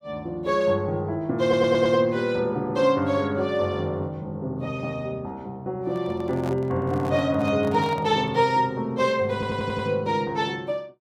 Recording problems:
stutter; at 1.5 s and at 9.5 s
microphone handling noise; from 6 to 8.5 s; peak -8 dB vs average level

